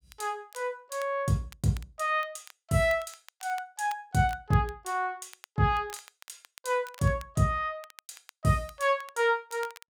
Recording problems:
crackle; vinyl, SNR 23 dB

